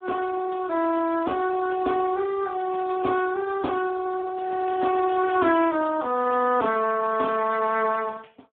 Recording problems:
phone line; 170 Hz to 3.7 kHz, Speex

